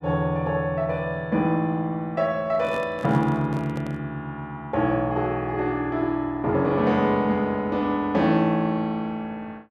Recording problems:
handling noise; from 2.5 to 4 s; peak -9 dB vs average level

